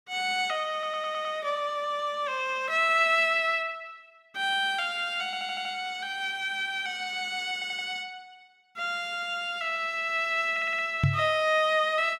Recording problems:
stutter; 4 times, first at 0.5 s
microphone thump; at 11 s; peak +6 dB vs average level

